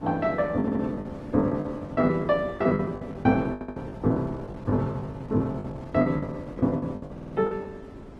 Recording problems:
codec artefacts; Opus, log-spectral distance 2 dB
wind noise; below 440 Hz, SNR 16 dB
lost packets; 19% of the sound replaced, filled with the last packet
stutter; at 0.5 s, at 3.5 s and at 7 s

